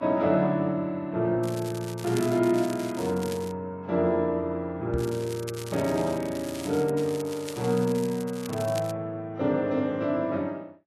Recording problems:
codec artefacts; Vorbis, log-spectral distance 3 dB
crackling; from 1.5 to 3.5 s, from 5 to 7 s and from 7 to 9 s; loose cable, SNR 15 dB
microphone thump; at 5 s; peak 0 dB vs average level

